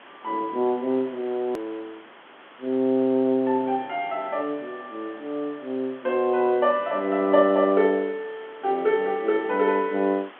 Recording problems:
phone line; 220 Hz to 3.6 kHz, G.711
background hiss; SNR 23 dB
click at an edit; at 1.5 s

